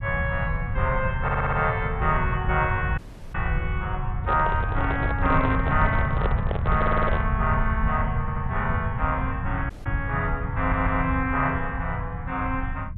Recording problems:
treble missing; nothing above 4 kHz
rumble; below 120 Hz, SNR 2 dB
stutter; 4 times, first at 1 s
dropout; at 3 s and at 9.5 s
microphone handling noise; from 4 to 7.5 s; peak +1 dB vs average level

